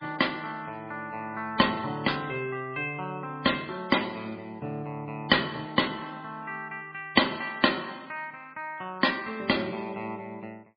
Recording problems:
codec artefacts; MP3, log-spectral distance 4 dB, nothing above 4.8 kHz

